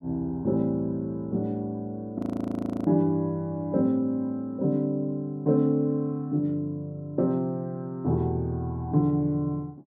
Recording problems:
audio freezing; at 2 s for 0.5 s

